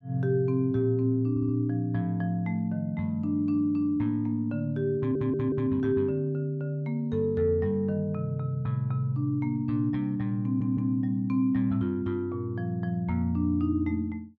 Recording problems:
audio stuttering; at 1.5 s, at 5 s and at 10 s

